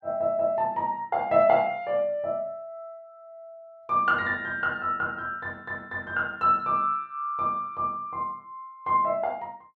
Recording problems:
none

